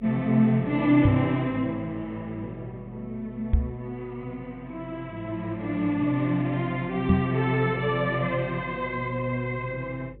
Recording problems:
treble cut off; nothing above 4 kHz
hum; 50 Hz, harmonics up to 550 Hz, SNR 23 dB
microphone bump; at 1 s, at 3.5 s and at 7 s; peak +8 dB vs average level

